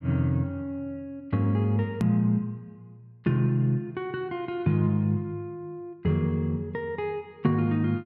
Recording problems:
hard cut with a click; at 2 s

